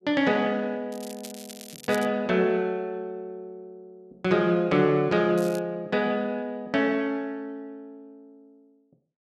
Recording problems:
crackle; from 1 to 2 s and at 5.5 s; loose cable, SNR 18 dB

